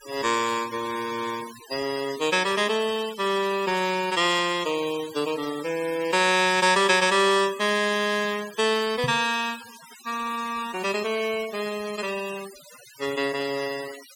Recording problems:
denoising artefacts; signal-to-artefact ratio 15 dB
knock on the microphone; at 9 s; peak -2 dB vs average level

